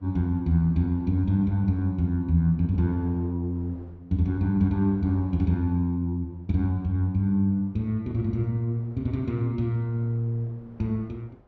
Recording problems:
wind noise; below 550 Hz, SNR 28 dB

